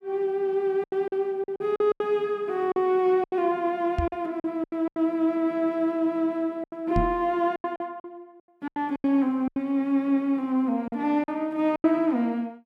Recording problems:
packet loss; 11% of the sound replaced, filled with silence
knock on the microphone; at 4 s and at 7 s; peak +3 dB vs average level

